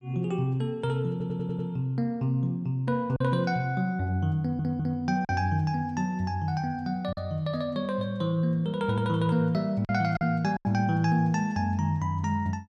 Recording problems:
lost packets; 2% of the sound replaced, filled with silence
stutter; at 1 s and at 4.5 s

